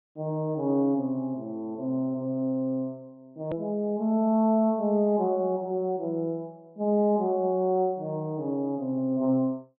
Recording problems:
treble missing; nothing above 4 kHz
click at an edit; at 3.5 s

